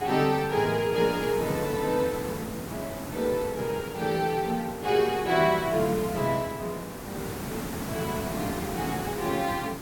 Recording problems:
hiss; slope -6 dB per octave, SNR 8 dB

